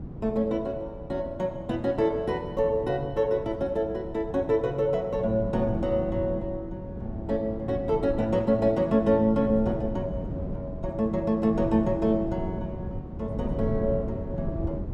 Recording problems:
wind noise; below 240 Hz, SNR 9 dB

